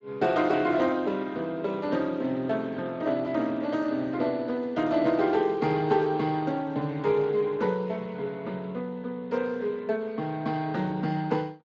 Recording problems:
lossy codec; Speex, log-spectral distance 3 dB, nothing above 7.3 kHz

